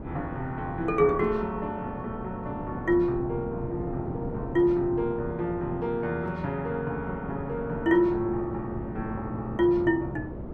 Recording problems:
wind on the microphone; below 370 Hz, SNR 10 dB

